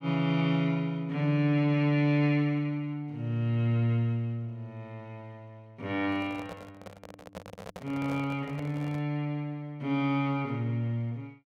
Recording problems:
handling noise; from 6 to 9 s; peak -8 dB vs average level

